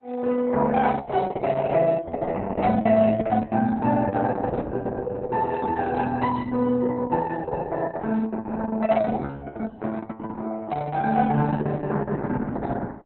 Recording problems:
lossy compression; Opus, log-spectral distance 3 dB, nothing above 4 kHz

